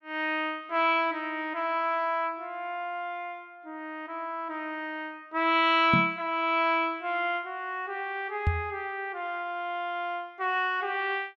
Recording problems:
knock on the microphone; at 6 s and at 8.5 s; peak +6 dB vs average level

